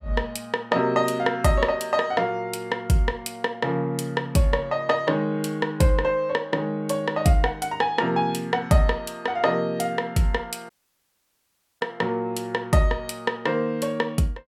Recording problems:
audio cutting out; at 11 s for 1 s

